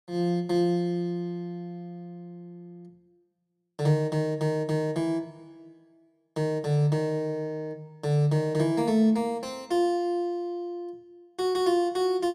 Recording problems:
none

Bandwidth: 14 kHz